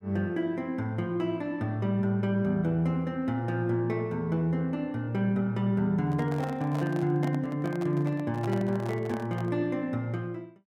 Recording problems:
microphone handling noise; from 6 to 9.5 s; peak -6 dB vs average level

